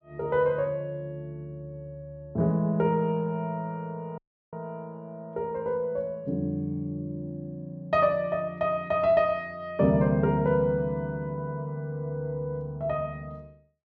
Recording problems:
dropout; at 4 s

